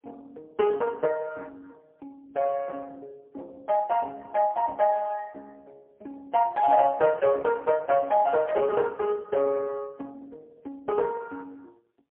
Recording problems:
phone line; 370 Hz to 2.2 kHz, AMR-NB, then MP3

